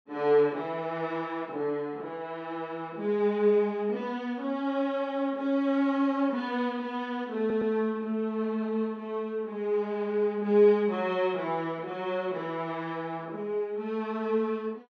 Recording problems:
stutter; at 7.5 s

